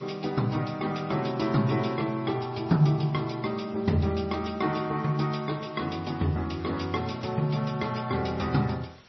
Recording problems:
codec artefacts; MP3, log-spectral distance 5 dB, nothing above 5.5 kHz
background hiss; slope -1 dB per octave, SNR 26 dB

